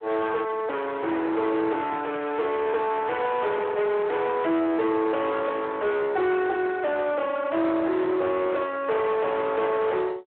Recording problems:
phone line; 300 Hz to 3.4 kHz, Speex
distorted audio; soft clipping, signal-to-distortion ratio 8 dB

